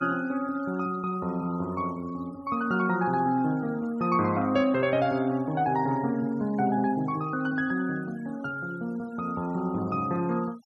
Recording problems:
denoising artefacts; signal-to-artefact ratio 23 dB

